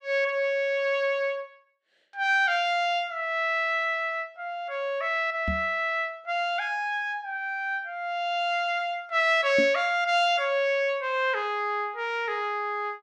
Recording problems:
microphone thump; at 5.5 s and at 9.5 s; peak -1 dB vs average level

